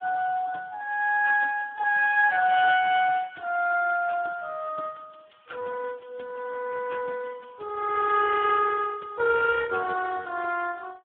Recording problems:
telephone audio; 240 Hz to 2.3 kHz, Speex

